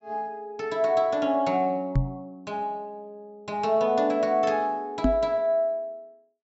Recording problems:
low-pass filter; nothing above 8 kHz
microphone bump; at 2 s and at 5 s; peak +6 dB vs average level

